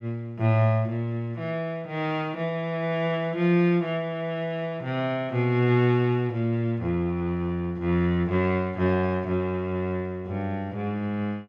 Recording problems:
none

